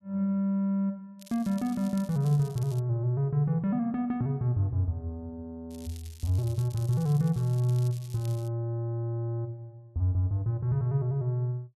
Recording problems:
crackle; from 1 to 3 s and from 5.5 to 8.5 s; loose cable, SNR 22 dB

